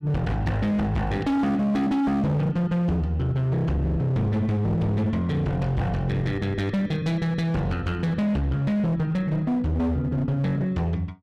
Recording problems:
distorted audio; hard clipping, signal-to-distortion ratio 7 dB

